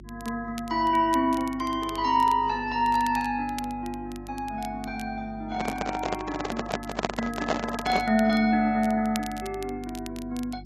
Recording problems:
codec artefacts; AAC, log-spectral distance 2 dB
hum; 50 Hz, harmonics up to 350 Hz, SNR 18 dB
crackle; vinyl, SNR 19 dB
handling noise; from 5.5 to 8 s; peak +4 dB vs average level

